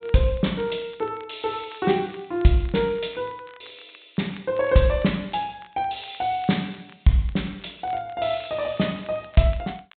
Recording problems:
treble missing; nothing above 4 kHz
crackle; vinyl, SNR 26 dB

